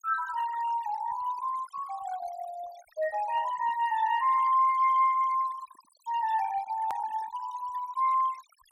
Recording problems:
noise reduction artefacts; signal-to-artefact ratio 18 dB
hard cut with a click; at 7 s

